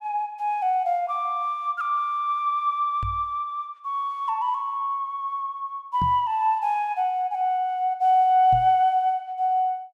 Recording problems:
microphone thump; at 3 s, at 6 s and at 8.5 s; peak -3 dB vs average level

